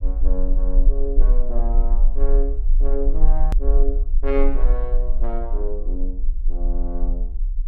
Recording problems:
low-frequency rumble; below 36 Hz, strongest tone 18 Hz, SNR -8 dB
edit click; at 3.5 s

